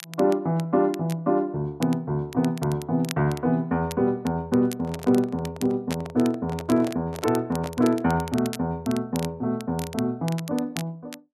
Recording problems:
crackling; vinyl, SNR 17 dB
handling noise; from 4.5 to 8 s; peak -7 dB vs average level

